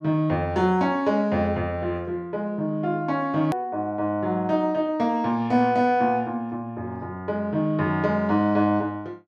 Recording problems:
hard cut with a click; at 3.5 s

